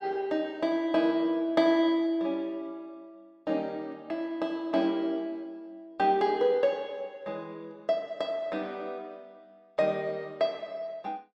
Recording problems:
none

